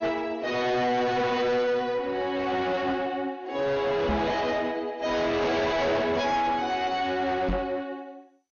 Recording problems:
codec artefacts; AAC, then MP2, log-spectral distance 2 dB, nothing above 6.7 kHz
distorted audio; soft clipping, signal-to-distortion ratio 7 dB
knock on the microphone; at 4 s and at 7.5 s; peak +3 dB vs average level

